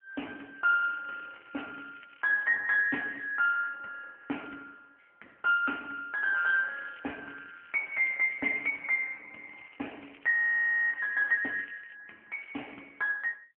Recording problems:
phone line; 240 Hz to 2.8 kHz, AMR-NB
crackle; 4 times, first at 0.5 s; loose cable, SNR 27 dB
frozen audio; at 10 s for 0.5 s

